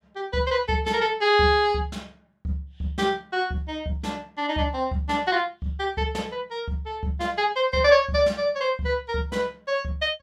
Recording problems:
none

